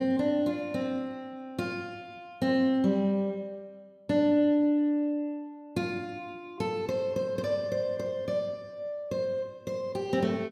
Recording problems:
none

